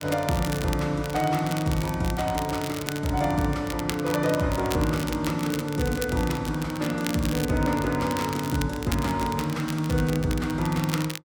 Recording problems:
crackling; vinyl, SNR 11 dB

